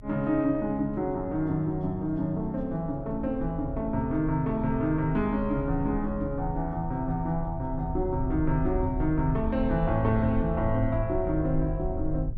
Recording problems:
rumble; below 74 Hz, SNR 9 dB

